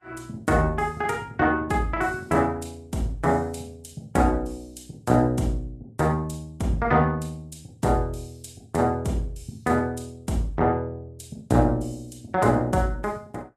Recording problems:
codec artefacts; Vorbis, log-spectral distance 2 dB, nothing above 13.5 kHz

